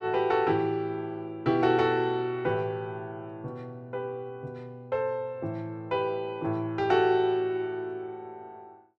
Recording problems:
none

